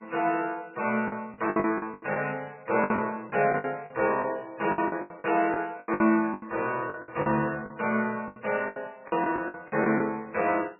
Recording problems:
lossy codec; MP3, log-spectral distance 4 dB, nothing above 2.5 kHz
lost packets; 15% of the sound replaced, filled with the last packet

